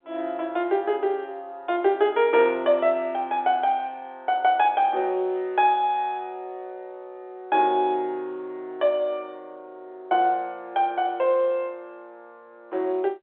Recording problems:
telephone audio; 320 Hz to 3.6 kHz, G.711

